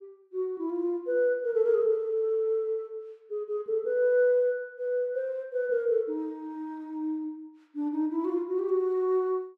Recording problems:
none

